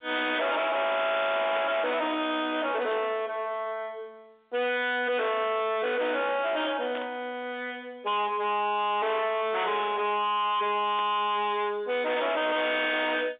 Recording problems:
phone line; 260 Hz to 3.7 kHz, G.711
distortion; hard clipping, signal-to-distortion ratio 5 dB
burst of static; 4 times, first at 1.5 s; peak -8 dB vs average level

